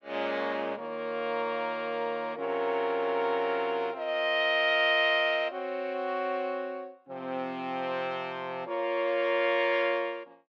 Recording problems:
none

